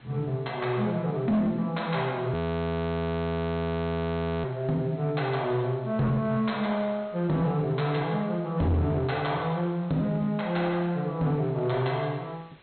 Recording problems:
treble missing; nothing above 4.1 kHz
distorted audio; hard clipping, signal-to-distortion ratio 10 dB
hiss; SNR 27 dB
frozen audio; at 2.5 s for 2 s

